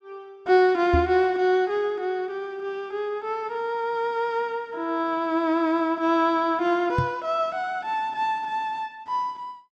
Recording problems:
knock on the microphone; at 1 s and at 7 s; peak +3 dB vs average level

